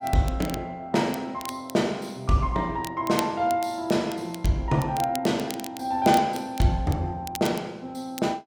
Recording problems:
crackle; vinyl, SNR 15 dB

